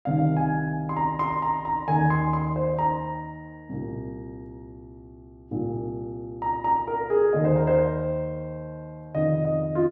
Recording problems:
none

